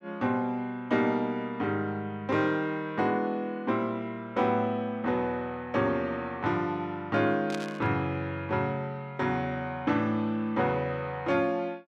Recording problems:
burst of static; at 7.5 s; peak -5 dB vs average level

